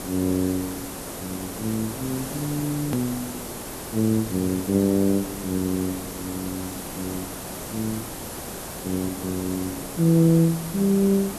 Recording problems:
background hiss; SNR 8 dB
click at an edit; at 3 s

